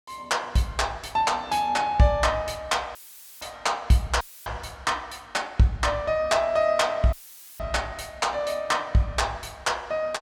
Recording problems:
audio cutting out; at 3 s, at 4 s and at 7 s; filled with static

